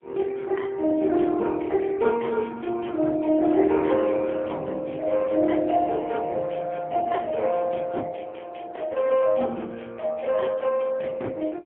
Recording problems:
phone line; 190 Hz to 3.1 kHz, AMR-NB, then MP3

